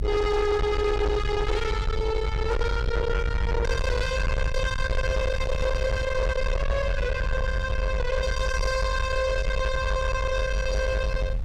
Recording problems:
distorted audio; soft clipping, signal-to-distortion ratio 8 dB
rumble; below 120 Hz, SNR 2 dB
wind noise; below 2.3 kHz, SNR 22 dB

